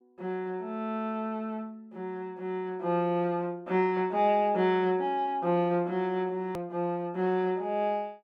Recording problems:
hard cut with a click; at 6.5 s

